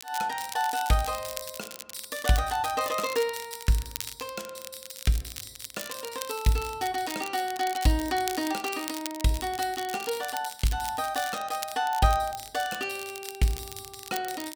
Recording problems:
crackling; vinyl, SNR 10 dB

